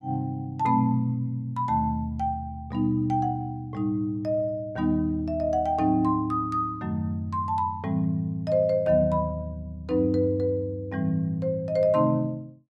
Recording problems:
none

